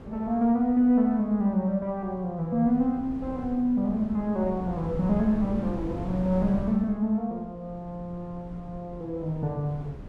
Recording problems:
wind noise; below 270 Hz, SNR 14 dB

